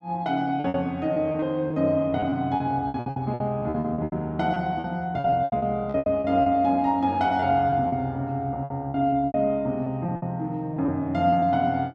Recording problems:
lost packets; 14% of the sound replaced, filled with repeated pitch periods

